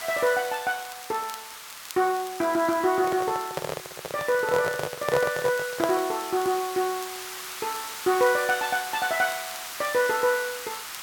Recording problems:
hiss; SNR 10 dB
crackling; vinyl, SNR 22 dB
handling noise; from 3 to 6 s; peak +3 dB vs average level

